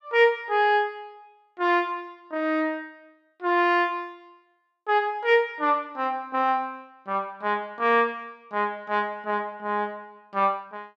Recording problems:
none

